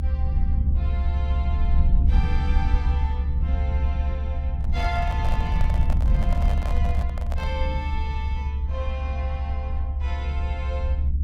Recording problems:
low-frequency rumble; below 72 Hz, SNR -11 dB
microphone handling noise; from 4.5 to 7.5 s; peak +3 dB vs average level

